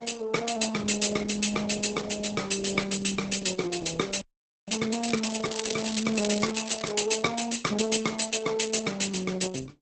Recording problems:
lossy compression; Opus, log-spectral distance 9 dB, nothing above 8.2 kHz
frozen audio; at 4 s
crackling; from 5 to 7 s; loose cable, SNR 9 dB

